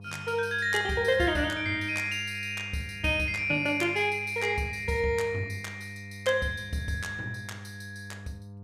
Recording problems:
electrical hum; 50 Hz, harmonics up to 700 Hz, SNR 16 dB

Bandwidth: 15.5 kHz